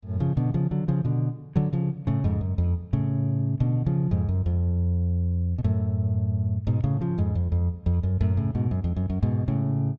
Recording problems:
none

